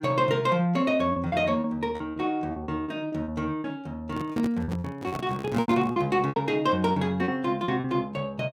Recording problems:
packet loss; 12% of the sound replaced, filled with repeated pitch periods
handling noise; from 4 to 6 s; peak -1 dB vs average level

